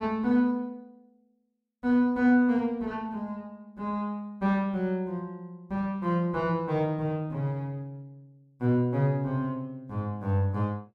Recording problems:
none

